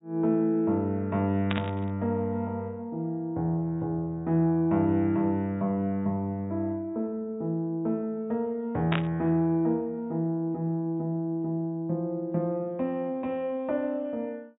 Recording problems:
treble cut off; nothing above 4 kHz
burst of static; at 1.5 s and at 9 s; peak +2 dB vs average level

